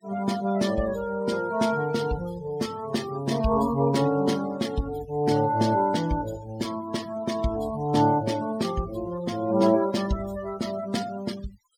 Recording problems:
denoising artefacts; signal-to-artefact ratio 18 dB

